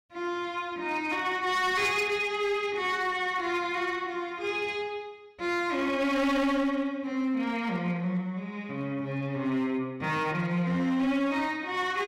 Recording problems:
distortion; hard clipping, signal-to-distortion ratio 11 dB

